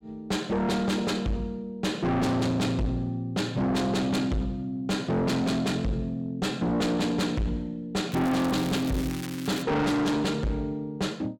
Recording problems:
distorted audio; soft clipping, signal-to-distortion ratio 6 dB
crackling; from 8 to 9.5 s; loose cable, SNR 13 dB

